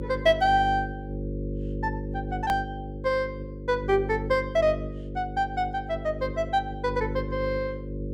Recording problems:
mains hum; 50 Hz, harmonics up to 550 Hz, SNR 7 dB
edit click; at 2.5 s

